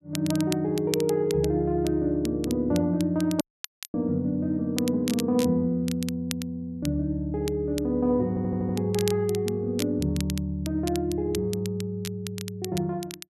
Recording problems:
crackling; vinyl, SNR 13 dB
dropout; at 3.5 s for 0.5 s
audio stuttering; at 8.5 s

